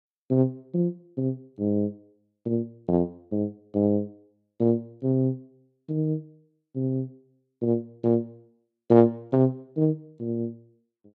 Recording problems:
none

